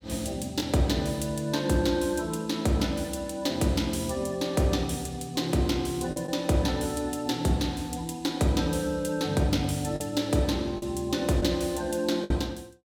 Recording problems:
packet loss; 1.9% of the sound replaced, filled with the last packet

